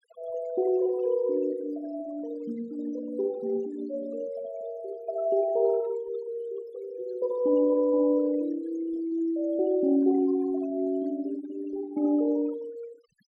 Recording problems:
denoising artefacts; signal-to-artefact ratio 20 dB

